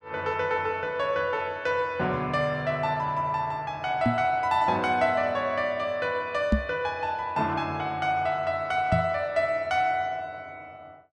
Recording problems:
microphone bump; at 4 s, at 6.5 s and at 9 s; peak +7 dB vs average level

